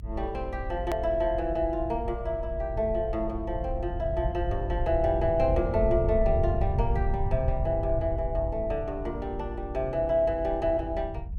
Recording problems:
low-frequency rumble; below 92 Hz, SNR 5 dB
click at an edit; at 1 s

